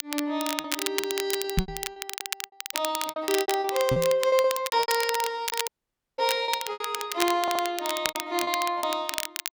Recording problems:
crackle; vinyl, SNR 5 dB
lost packets; 14% of the sound replaced, filled with repeated pitch periods
microphone bump; at 1.5 s and at 4 s; peak +6 dB vs average level
audio cutting out; at 5.5 s for 0.5 s
audio stuttering; at 7.5 s

